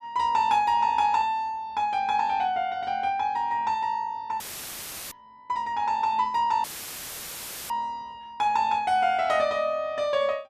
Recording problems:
dropout; at 4.5 s for 0.5 s and at 6.5 s for 1 s; filled with static

